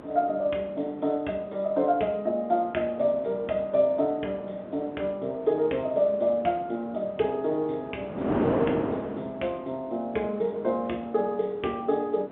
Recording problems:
telephone audio; 300 Hz to 3.4 kHz, G.711
wind noise; below 650 Hz, SNR 10 dB

